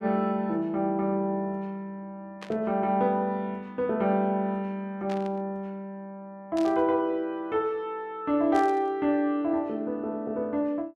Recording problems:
static burst; 4 times, first at 2.5 s; peak -10 dB vs average level

